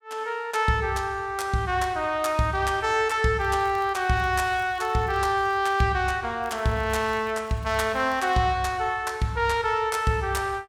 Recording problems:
crackle; from 3.5 to 6 s and from 6.5 to 8.5 s; loose cable, SNR 29 dB

